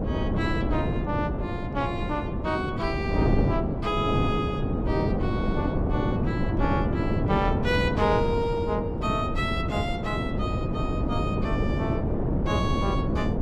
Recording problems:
wind on the microphone; below 340 Hz, SNR -3 dB

